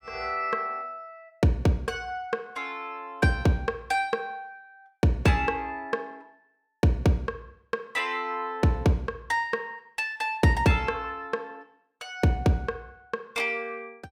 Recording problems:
none

